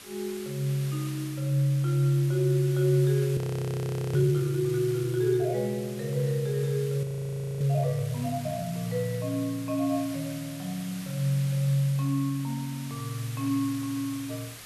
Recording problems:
background hiss; SNR 15 dB
frozen audio; at 3.5 s for 1 s and at 7 s for 0.5 s

